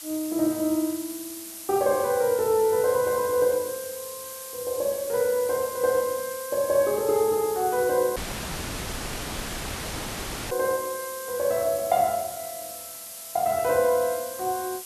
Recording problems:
hiss; slope +2 dB per octave, SNR 11 dB
dropout; at 8 s for 2.5 s

